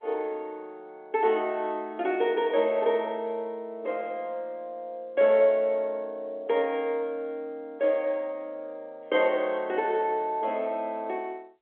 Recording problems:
phone line; 280 Hz to 3.7 kHz, G.711

